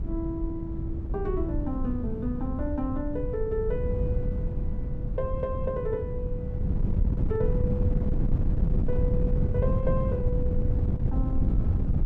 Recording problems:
wind on the microphone; below 130 Hz, SNR -4 dB

